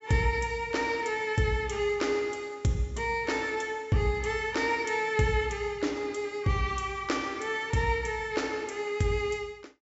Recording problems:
low-pass filter; nothing above 8 kHz

